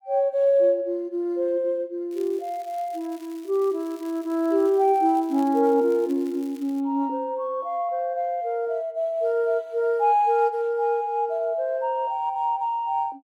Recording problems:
crackling; from 2 to 7 s; loose cable, SNR 27 dB

